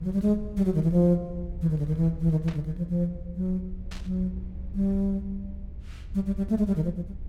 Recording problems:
rumble; below 68 Hz, SNR 13 dB
static burst; at 2.5 s and at 4 s; peak -12 dB vs average level

